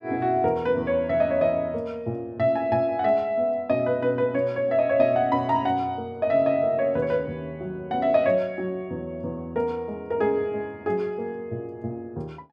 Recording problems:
none

